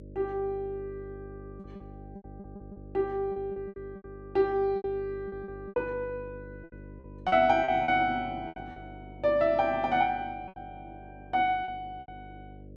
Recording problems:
hum; 50 Hz, harmonics up to 600 Hz, SNR 18 dB
packet loss; 9% of the sound replaced, filled with repeated pitch periods

